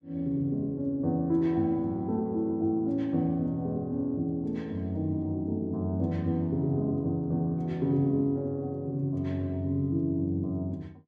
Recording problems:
none

